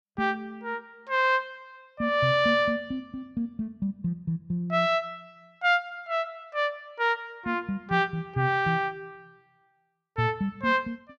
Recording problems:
none

